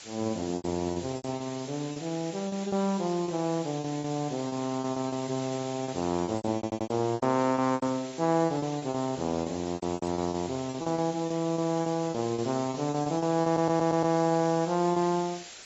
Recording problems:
codec artefacts; AAC, log-spectral distance 14 dB
background hiss; slope 0 dB per octave, SNR 15 dB
packet loss; 14% of the sound replaced, filled with repeated pitch periods
stutter; at 6.5 s and at 13 s

